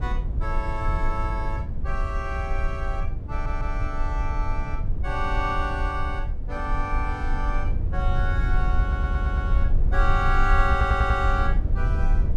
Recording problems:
rumble; below 66 Hz, SNR -3 dB
audio stuttering; at 3.5 s, at 9 s and at 11 s

